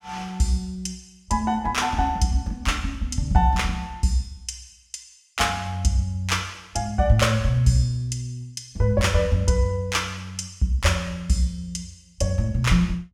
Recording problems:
none

